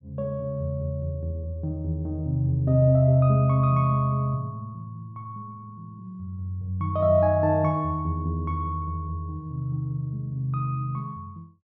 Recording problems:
none

